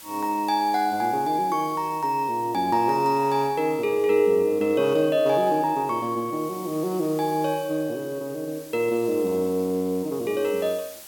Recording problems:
hiss; slope 0 dB per octave, SNR 20 dB

